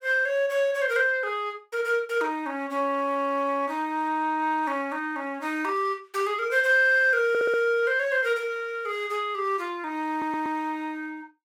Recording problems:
audio stuttering; at 7.5 s and at 10 s

